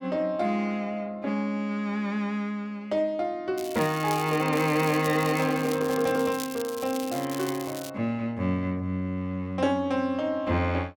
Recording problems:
crackling; from 3.5 to 8 s; loose cable, SNR 13 dB

